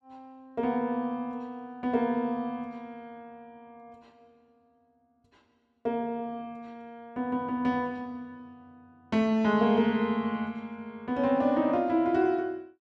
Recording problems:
none

